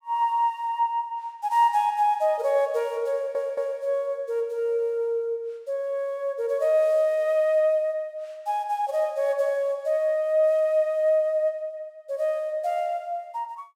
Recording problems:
stutter; at 3 s

